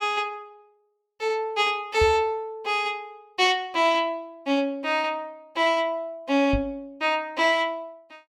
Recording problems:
microphone bump; at 2 s and at 6.5 s; peak 0 dB vs average level

